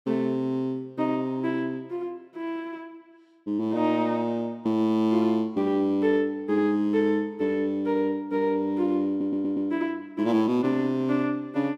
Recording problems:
audio stuttering; at 9 s

